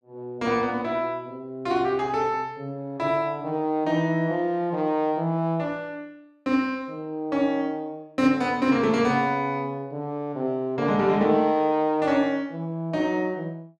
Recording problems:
none

